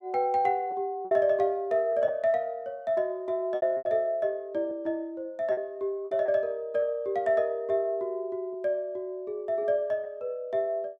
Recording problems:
lost packets; 4% of the sound replaced, filled with repeated pitch periods

